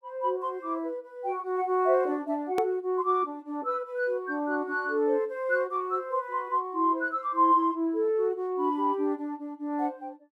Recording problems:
click at an edit; at 2.5 s

